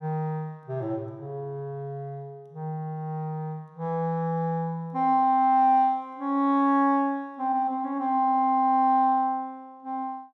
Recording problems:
none

